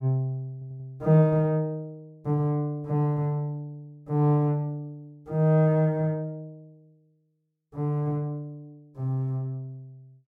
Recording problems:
stutter; at 0.5 s

